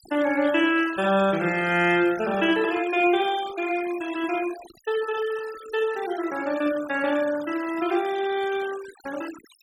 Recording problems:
noise reduction artefacts; signal-to-artefact ratio 16 dB

